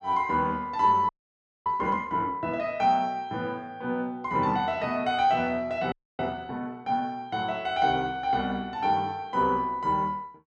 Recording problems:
audio freezing; at 1 s for 0.5 s and at 6 s

